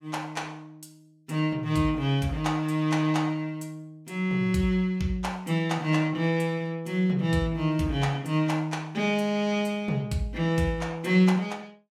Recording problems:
none

